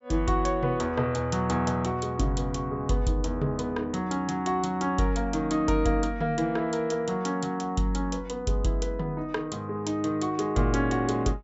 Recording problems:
low-pass filter; nothing above 8 kHz

